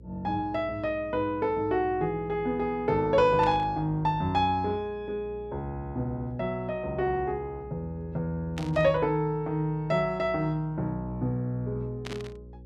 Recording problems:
hum; 60 Hz, harmonics up to 540 Hz, SNR 20 dB
burst of static; at 3.5 s, at 8.5 s and at 12 s; peak -7 dB vs average level

